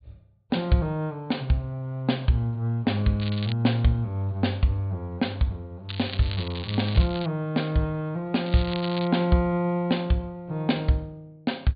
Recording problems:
treble missing; nothing above 4.5 kHz
crackle; at 3 s, from 6 to 7.5 s and at 8.5 s; loose cable, SNR 12 dB

